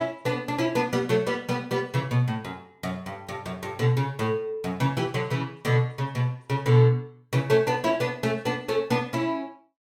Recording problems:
none

